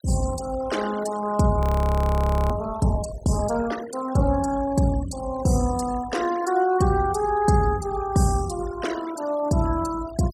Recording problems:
noise reduction artefacts; signal-to-artefact ratio 16 dB
frozen audio; at 1.5 s for 1 s

